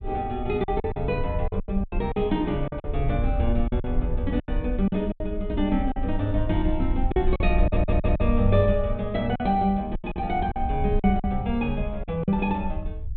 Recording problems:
treble cut off; nothing above 4 kHz
rumble; below 64 Hz, SNR 5 dB
packet loss; 10% of the sound replaced, filled with silence
stutter; at 7.5 s

